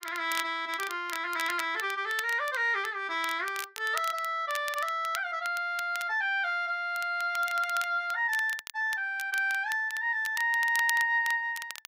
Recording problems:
crackling; vinyl, SNR 13 dB

